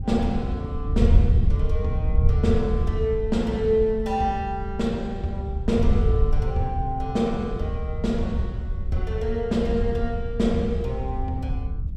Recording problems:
wind noise; below 82 Hz, SNR 1 dB

